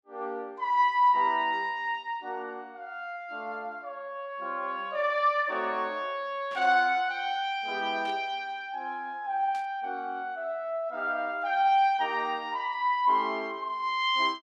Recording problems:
burst of static; at 6.5 s, at 8 s and at 9.5 s; peak -14 dB vs average level

